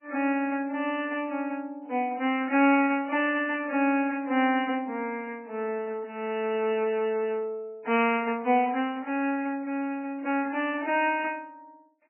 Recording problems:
lossy compression; MP3, log-spectral distance 3 dB, nothing above 2.5 kHz

